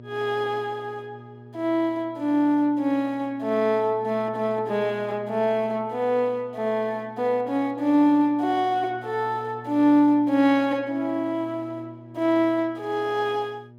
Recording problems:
electrical hum; 60 Hz, harmonics up to 840 Hz, SNR 22 dB

